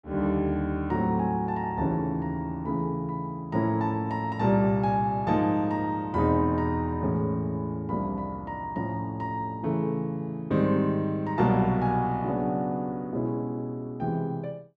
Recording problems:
none

